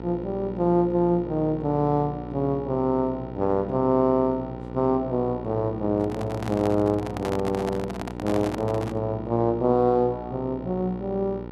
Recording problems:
hum; 60 Hz, harmonics up to 1.4 kHz, SNR 11 dB
microphone handling noise; from 6 to 9 s; peak -3 dB vs average level

